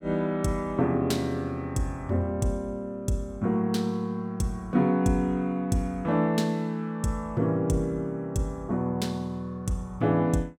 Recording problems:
none

